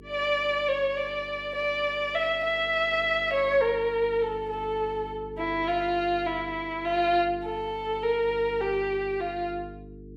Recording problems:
electrical hum; 50 Hz, harmonics up to 450 Hz, SNR 18 dB

